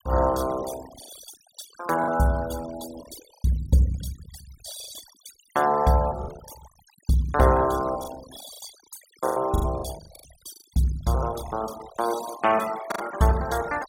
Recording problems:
denoising artefacts; signal-to-artefact ratio 14 dB
lost packets; 6% of the sound replaced, filled with the last packet

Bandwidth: 16.5 kHz